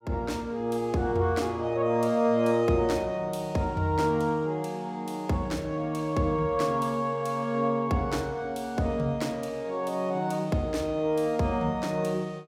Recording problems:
none

